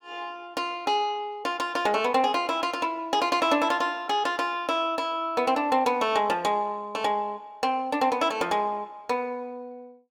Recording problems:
none

